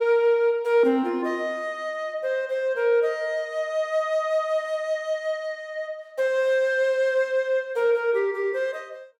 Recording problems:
none

